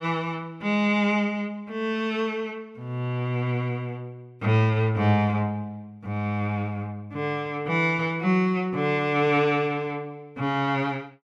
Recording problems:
none

